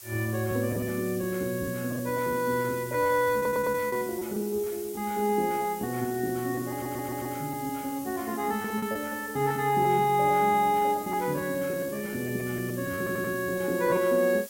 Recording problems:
hiss; slope +2 dB per octave, SNR 14 dB
packet loss; 10% of the sound replaced, filled with repeated pitch periods
stutter; at 3.5 s, at 6.5 s and at 13 s

